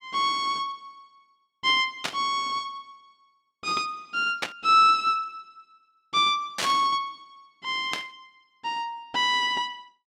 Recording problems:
burst of static; 4 times, first at 2 s; peak +1 dB vs average level

